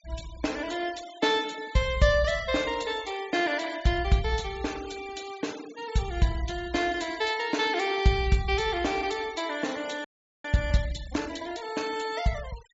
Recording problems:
treble missing; nothing above 8 kHz
noise reduction artefacts; signal-to-artefact ratio 18 dB
audio freezing; at 10 s

